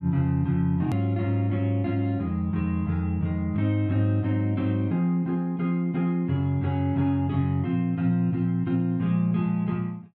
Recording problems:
click at an edit; at 1 s

